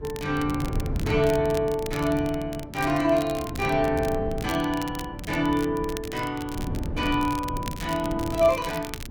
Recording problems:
wind on the microphone; below 220 Hz, SNR 9 dB
crackling; vinyl, SNR 15 dB

